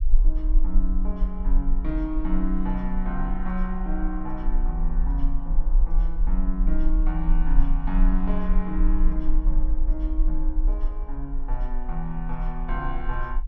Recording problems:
low-frequency rumble; below 38 Hz, strongest tone 22 Hz, SNR -5 dB

